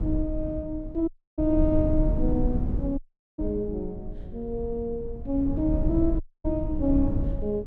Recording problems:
wind noise; below 100 Hz, SNR 3 dB
dropout; at 1 s, at 3 s and at 6 s

